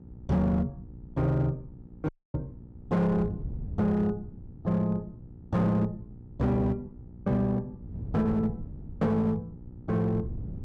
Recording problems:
distorted audio; hard clipping, uneven, signal-to-distortion ratio 11 dB
electrical hum; 60 Hz, harmonics up to 900 Hz, SNR 21 dB
wind on the microphone; below 150 Hz, SNR 15 dB
audio cutting out; at 2 s

